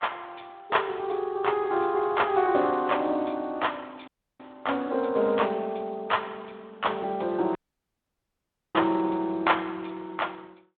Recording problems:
phone line; 260 Hz to 3.5 kHz, Speex
dropout; at 4 s and at 7.5 s for 1 s

